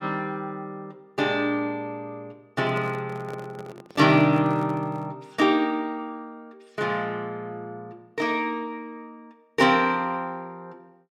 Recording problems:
microphone handling noise; from 2.5 to 5 s; peak -9 dB vs average level

